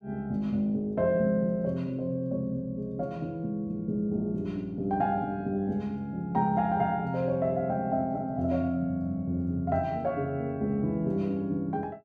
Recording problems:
none

